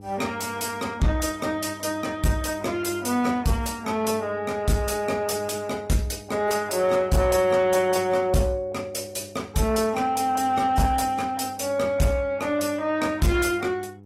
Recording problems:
lossy codec; AAC, log-spectral distance 3 dB, nothing above 13.8 kHz
distortion; soft clipping, signal-to-distortion ratio 11 dB
electrical hum; 50 Hz, harmonics up to 900 Hz, SNR 21 dB

